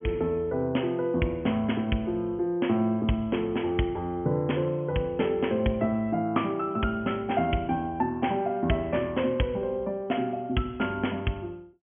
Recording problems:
treble cut off; nothing above 3.3 kHz

